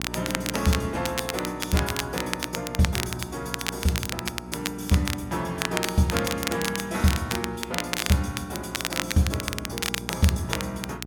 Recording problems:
hum; 60 Hz, harmonics up to 840 Hz, SNR 13 dB
crackle; vinyl, SNR 3 dB

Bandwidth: 17 kHz